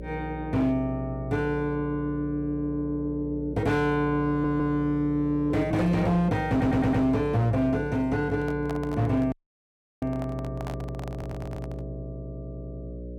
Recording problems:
distortion; hard clipping, signal-to-distortion ratio 12 dB
hum; 60 Hz, harmonics up to 600 Hz, SNR 12 dB
stutter; at 4.5 s, at 6.5 s and at 11 s
handling noise; from 8.5 to 12 s; peak -7 dB vs average level
dropout; at 9.5 s for 0.5 s

